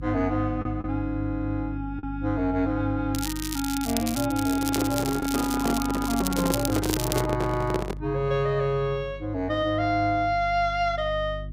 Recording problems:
electrical hum; 50 Hz, harmonics up to 350 Hz, SNR 11 dB
lost packets; 1.1% of the sound replaced, filled with the last packet
crackling; from 3 to 4.5 s and from 4.5 to 7 s; loose cable, SNR 6 dB
microphone handling noise; from 4.5 to 8 s; peak +3 dB vs average level

